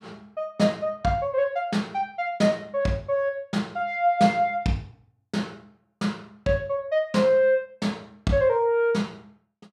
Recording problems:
none

